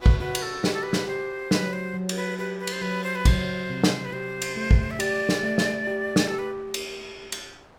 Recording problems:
wind on the microphone; below 1.3 kHz, SNR 26 dB

